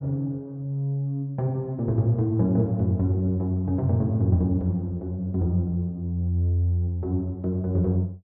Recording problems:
treble missing; nothing above 5.5 kHz

